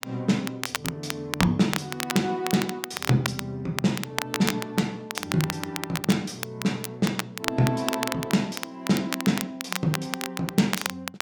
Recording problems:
crackling; vinyl, SNR 5 dB

